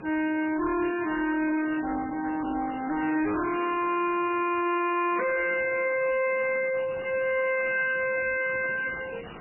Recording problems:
codec artefacts; MP3, then MP3, log-spectral distance 7 dB, nothing above 2.4 kHz
distortion; hard clipping, uneven, signal-to-distortion ratio 6 dB
background hiss; SNR 18 dB

